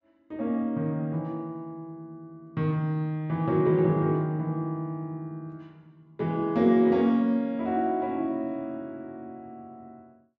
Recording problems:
low-pass filter; nothing above 8 kHz

